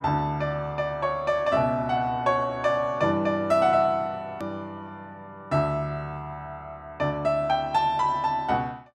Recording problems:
edit click; at 4.5 s

